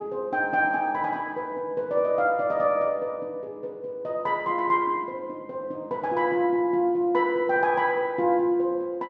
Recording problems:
none

